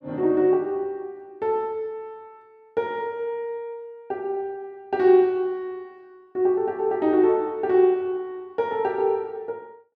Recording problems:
none

